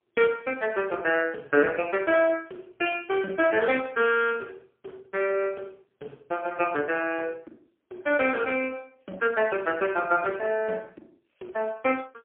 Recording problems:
telephone audio; 300 Hz to 3.2 kHz, AMR-NB, then MP3

